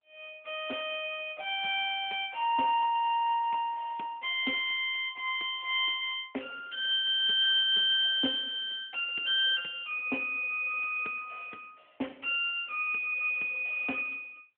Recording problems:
telephone audio; 220 Hz to 3.4 kHz, AMR-NB

